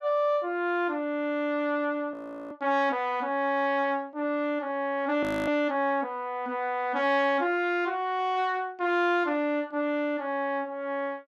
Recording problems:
frozen audio; at 2 s and at 5 s

